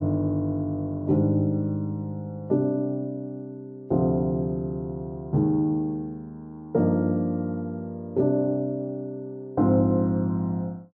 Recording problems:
none

